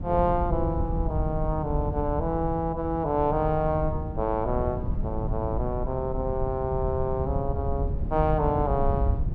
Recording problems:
wind on the microphone; below 120 Hz, SNR 4 dB

